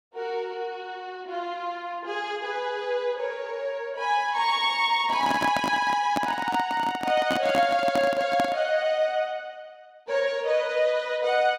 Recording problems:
microphone handling noise; from 5 to 8.5 s; peak +1 dB vs average level

